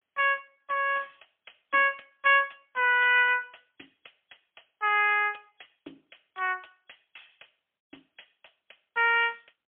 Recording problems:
phone line; 240 Hz to 3.3 kHz, AMR-NB, then MP3

